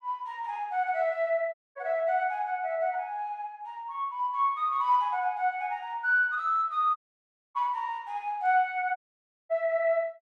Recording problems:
dropout; at 1.5 s, at 7 s for 0.5 s and at 9 s for 0.5 s

